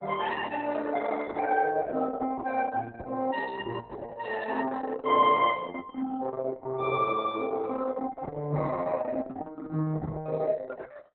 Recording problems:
codec artefacts; Opus, log-spectral distance 3 dB, nothing above 3.6 kHz

